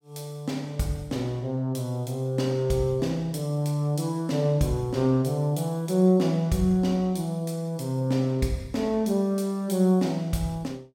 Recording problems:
none

